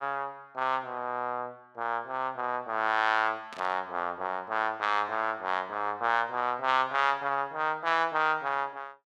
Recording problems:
burst of static; at 3.5 s; peak -11 dB vs average level

